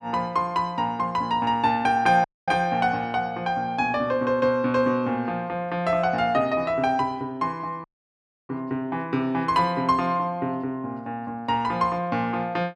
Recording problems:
dropout; at 2 s and at 8 s for 0.5 s

